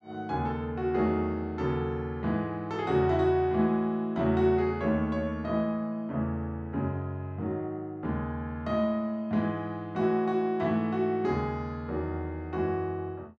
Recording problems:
none

